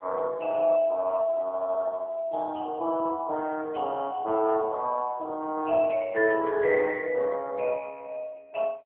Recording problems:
telephone audio; 280 Hz to 3 kHz, AMR-NB

